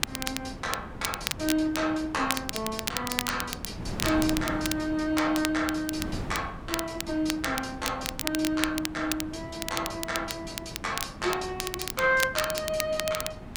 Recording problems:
wind noise; below 390 Hz, SNR 11 dB
crackle; vinyl, SNR 5 dB

